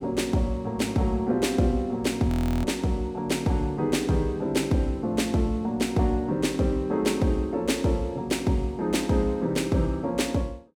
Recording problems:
frozen audio; at 2.5 s

